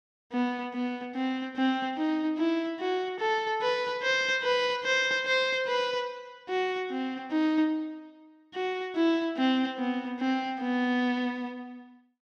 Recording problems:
none

